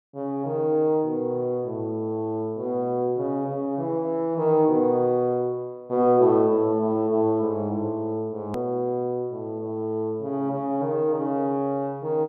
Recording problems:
click at an edit; at 8.5 s

